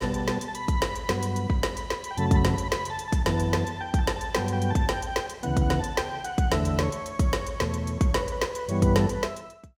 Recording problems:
none

